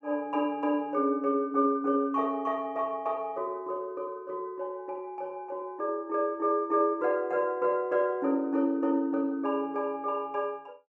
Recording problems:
none

